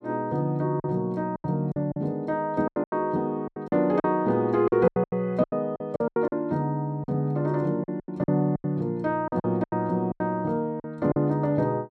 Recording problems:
packet loss; 13% of the sound replaced, filled with silence

